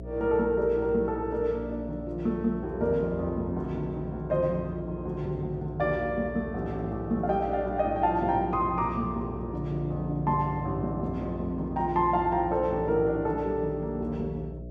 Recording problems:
hum; 60 Hz, harmonics up to 660 Hz, SNR 12 dB

